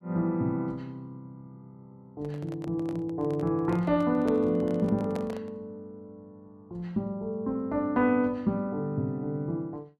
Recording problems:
microphone handling noise; from 2 to 5.5 s; peak -5 dB vs average level

